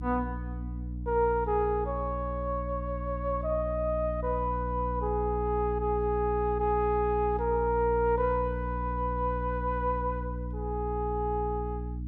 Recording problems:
hum; 60 Hz, harmonics up to 300 Hz, SNR 6 dB

